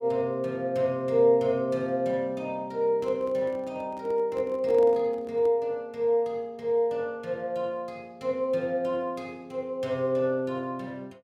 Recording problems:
handling noise; from 3 to 5.5 s; peak -11 dB vs average level

